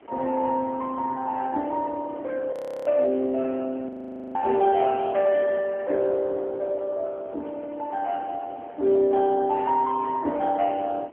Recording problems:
telephone audio; 240 Hz to 4 kHz, AMR-NB
wind on the microphone; below 730 Hz, SNR 20 dB
audio freezing; at 2.5 s and at 4 s

